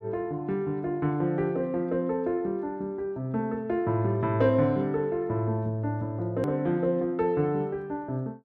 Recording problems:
edit click; at 6.5 s

